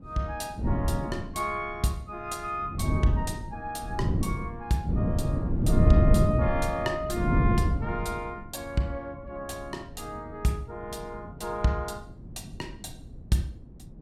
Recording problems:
wind on the microphone; below 190 Hz, SNR -4 dB

